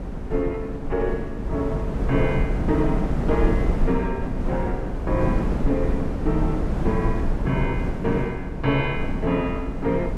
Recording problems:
wind noise; below 220 Hz, SNR 0 dB

